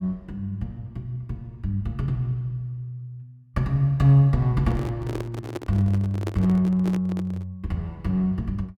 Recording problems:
handling noise; from 4.5 to 7.5 s; peak -2 dB vs average level

